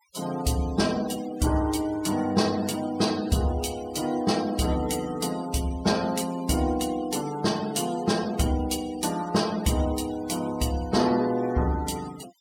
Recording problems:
denoising artefacts; signal-to-artefact ratio 17 dB

